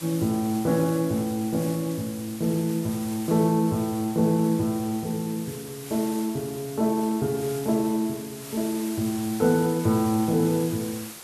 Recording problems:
background hiss; slope -1 dB per octave, SNR 14 dB

